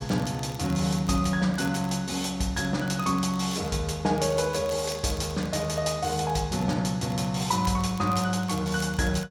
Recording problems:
crackling; vinyl, SNR 22 dB

